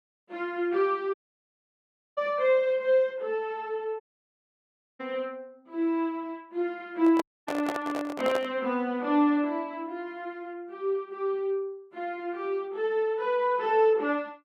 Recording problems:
dropout; at 1 s for 1 s, at 4 s for 1 s and at 7 s
handling noise; from 7 to 8.5 s; peak 0 dB vs average level

